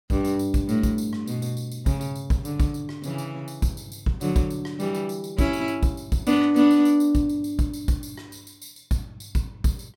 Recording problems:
none

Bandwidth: 17 kHz